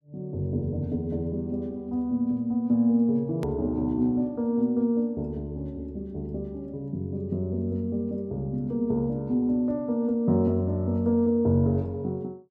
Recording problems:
hard cut with a click; at 3.5 s

